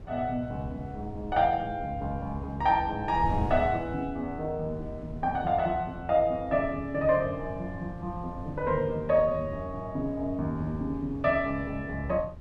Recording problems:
wind noise; below 150 Hz, SNR 13 dB

